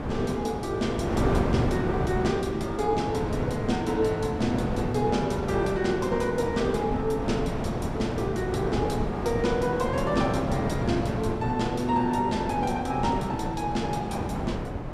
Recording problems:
wind noise; below 520 Hz, SNR 3 dB

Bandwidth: 14.5 kHz